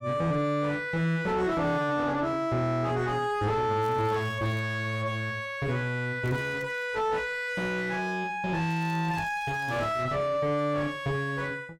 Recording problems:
distortion; soft clipping, signal-to-distortion ratio 5 dB
crackle; at 4 s, at 6 s and from 8.5 to 10 s; loose cable, SNR 28 dB

